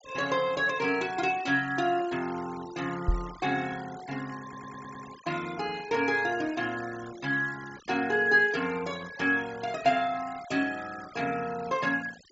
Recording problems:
treble cut off; nothing above 8 kHz
noise reduction artefacts; signal-to-artefact ratio 18 dB
microphone thump; at 3 s; peak +5 dB vs average level
stutter; at 4.5 s

